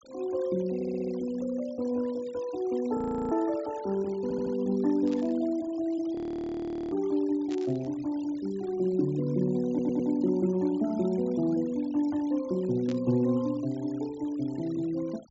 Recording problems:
treble missing; nothing above 8 kHz
noise reduction artefacts; signal-to-artefact ratio 23 dB
stutter; at 1 s, at 4 s and at 9.5 s
audio freezing; at 3 s and at 6 s for 1 s
static burst; at 5 s, at 7.5 s and at 13 s; peak -12 dB vs average level

